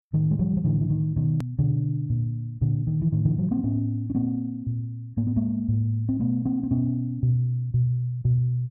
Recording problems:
edit click; at 1.5 s

